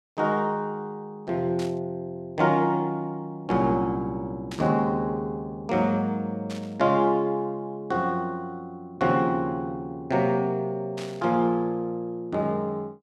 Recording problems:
static burst; 4 times, first at 1.5 s; peak -9 dB vs average level

